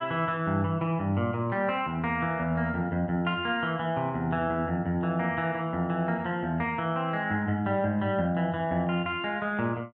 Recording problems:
none

